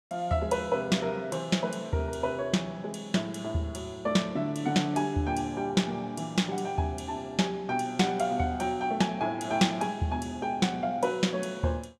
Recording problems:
none

